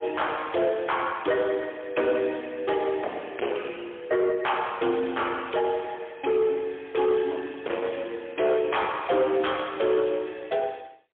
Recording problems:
telephone audio; 280 Hz to 3.4 kHz, AMR-NB, then MP3
distorted audio; hard clipping, signal-to-distortion ratio 8 dB

